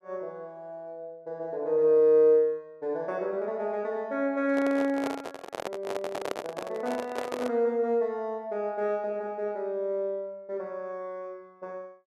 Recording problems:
microphone handling noise; from 4.5 to 7.5 s; peak 0 dB vs average level

